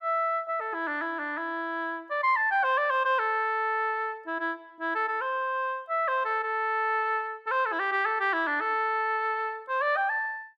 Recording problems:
none

